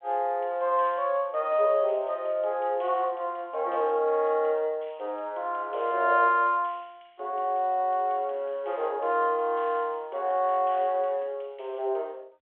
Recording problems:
telephone audio; 340 Hz to 3.4 kHz, G.726

